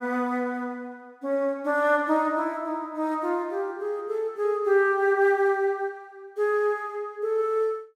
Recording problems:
none

